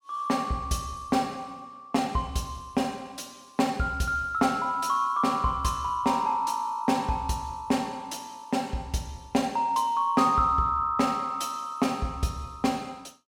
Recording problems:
none

